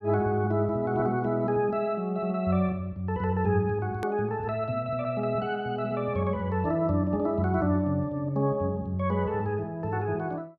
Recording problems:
hard cut with a click; at 4 s

